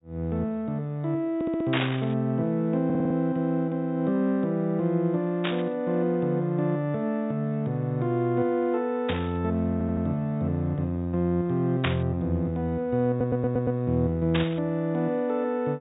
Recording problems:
treble cut off; nothing above 4 kHz
stutter; 4 times, first at 1.5 s
static burst; 5 times, first at 1.5 s; peak +3 dB vs average level

